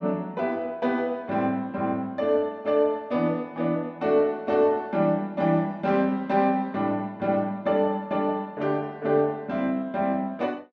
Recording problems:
none

